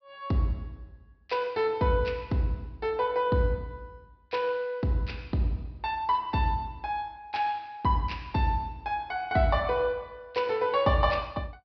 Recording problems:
low-pass filter; nothing above 5.5 kHz

